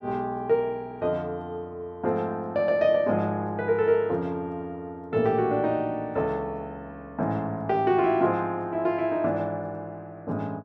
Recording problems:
none

